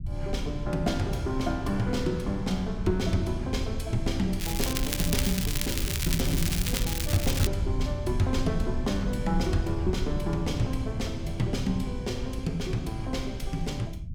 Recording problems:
low-frequency rumble; below 100 Hz, SNR 3 dB
crackling; from 4.5 to 7.5 s; loose cable, SNR 1 dB

